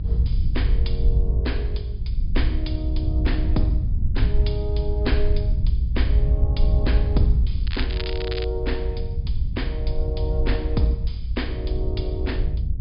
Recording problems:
treble missing; nothing above 5 kHz
low-frequency rumble; below 74 Hz, SNR -6 dB
crackling; at 7.5 s; loose cable, SNR 5 dB

